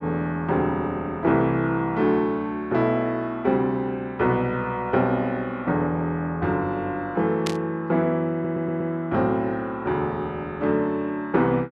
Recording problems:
static burst; at 7.5 s; peak -1 dB vs average level
stutter; at 8.5 s

